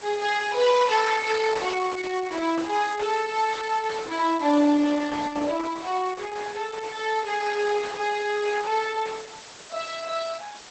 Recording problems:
codec artefacts; Opus, log-spectral distance 8 dB, nothing above 8 kHz
hiss; slope -1 dB per octave, SNR 17 dB

